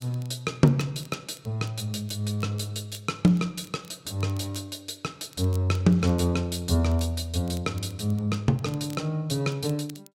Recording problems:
crackling; vinyl, SNR 25 dB

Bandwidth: 16 kHz